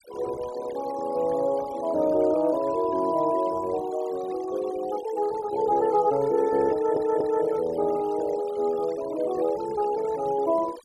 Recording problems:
noise reduction artefacts; signal-to-artefact ratio 19 dB
stutter; at 6.5 s

